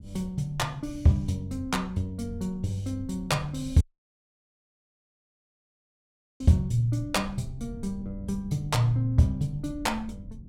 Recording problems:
rumble; below 120 Hz, SNR 16 dB
audio cutting out; at 4 s for 2.5 s

